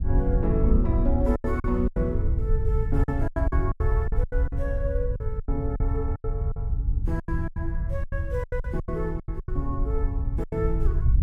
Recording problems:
wind noise; below 80 Hz, SNR -3 dB
packet loss; 14% of the sound replaced, filled with silence

